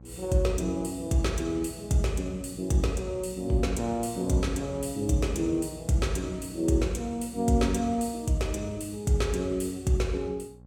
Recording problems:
electrical hum; 60 Hz, harmonics up to 840 Hz, SNR 20 dB

